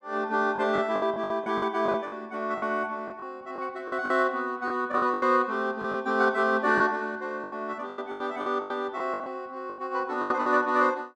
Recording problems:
lost packets; 12% of the sound replaced, filled with the last packet

